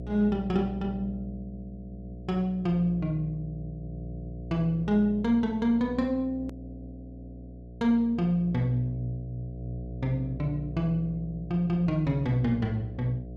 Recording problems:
mains hum; 60 Hz, harmonics up to 720 Hz, SNR 12 dB
hard cut with a click; at 6.5 s

